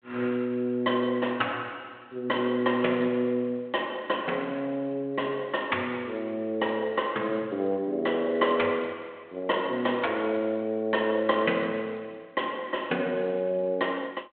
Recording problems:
telephone audio; 260 Hz to 3.5 kHz, G.726

